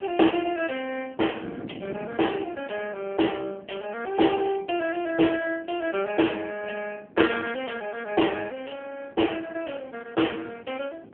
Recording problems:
phone line; 240 Hz to 3.3 kHz, AMR-NB
wind on the microphone; below 390 Hz, SNR 18 dB

